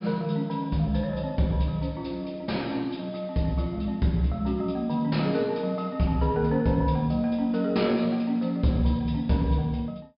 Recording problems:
low-pass filter; nothing above 5.2 kHz

